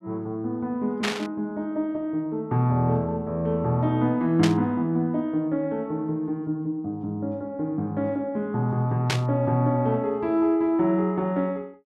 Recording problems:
static burst; at 1 s, at 4.5 s and at 9 s; peak +3 dB vs average level

